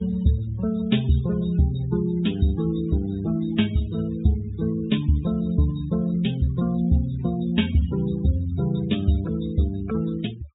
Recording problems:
low-pass filter; nothing above 4 kHz
noise reduction artefacts; signal-to-artefact ratio 19 dB

